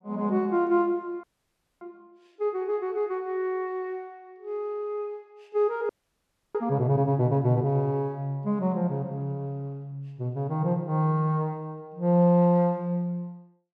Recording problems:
frozen audio; at 1 s for 0.5 s and at 6 s for 0.5 s

